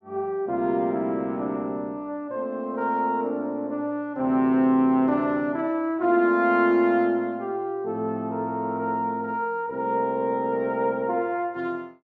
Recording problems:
none

